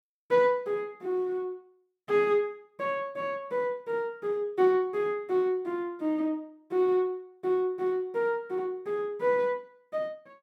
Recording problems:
none

